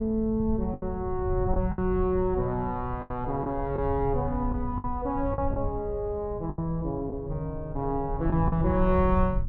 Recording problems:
low-frequency rumble; below 98 Hz, SNR 6 dB
lost packets; 6% of the sound replaced, filled with the last packet

